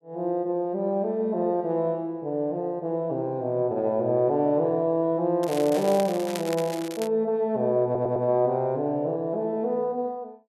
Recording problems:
crackle; from 5.5 to 7 s; loose cable, SNR 14 dB
stutter; at 8 s

